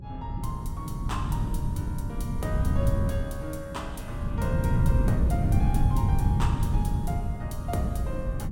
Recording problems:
electrical hum; 60 Hz, harmonics up to 540 Hz, SNR 23 dB
wind on the microphone; below 140 Hz, SNR -7 dB

